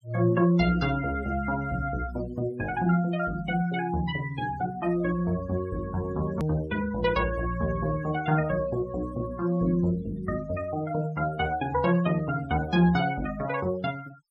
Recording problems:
noise reduction artefacts; signal-to-artefact ratio 21 dB
edit click; at 6.5 s

